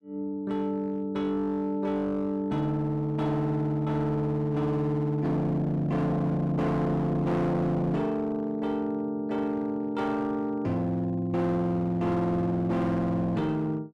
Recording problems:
distortion; hard clipping, signal-to-distortion ratio 10 dB

